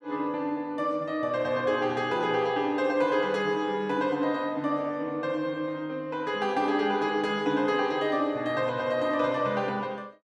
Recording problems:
none

